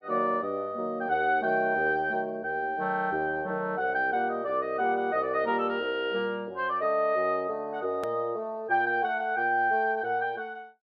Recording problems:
click at an edit; at 8 s

